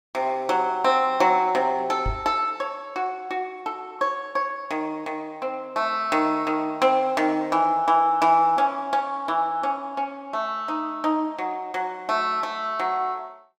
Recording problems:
microphone thump; at 2 s; peak -2 dB vs average level

